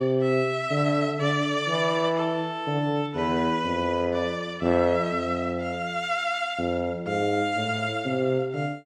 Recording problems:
none

